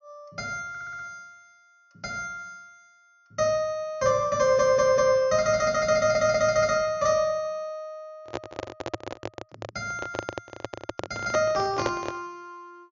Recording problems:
low-pass filter; nothing above 7.1 kHz
stutter; at 0.5 s, at 4.5 s and at 6 s
handling noise; from 8 to 12 s; peak +1 dB vs average level

